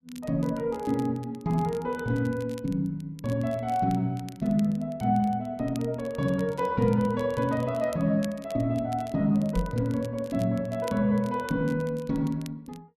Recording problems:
crackling; vinyl, SNR 24 dB
knock on the microphone; at 9.5 s; peak +4 dB vs average level

